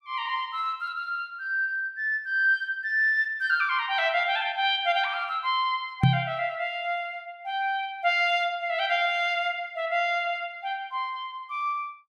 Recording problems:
microphone thump; at 6 s; peak +9 dB vs average level

